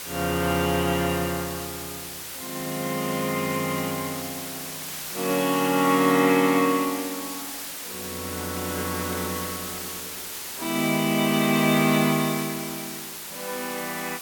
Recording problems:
background hiss; slope 0 dB per octave, SNR 8 dB

